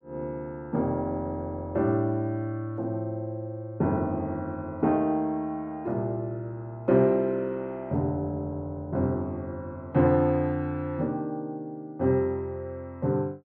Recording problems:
none

